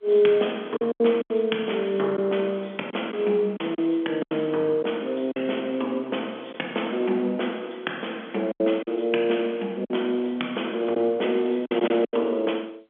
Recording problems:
phone line; 240 Hz to 3.4 kHz, G.711
lost packets; 6% of the sound replaced, filled with silence

